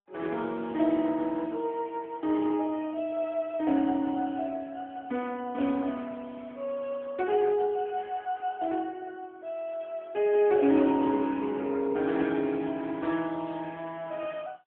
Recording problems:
telephone audio; 190 Hz to 3.5 kHz, AMR-NB

